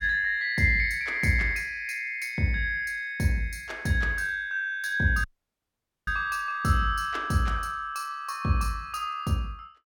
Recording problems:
audio cutting out; at 5 s for 1 s

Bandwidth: 17.5 kHz